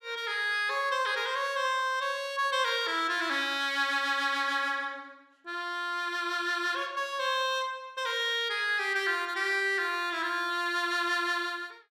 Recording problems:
none

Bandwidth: 14.5 kHz